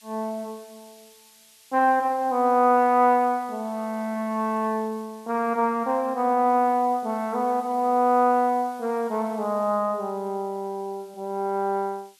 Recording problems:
background hiss; SNR 28 dB

